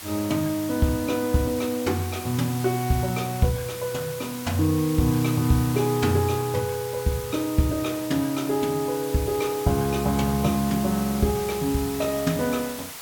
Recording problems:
hiss; SNR 11 dB

